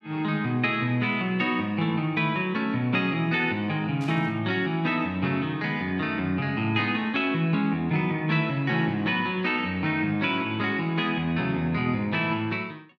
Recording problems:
burst of static; at 4 s; peak -15 dB vs average level

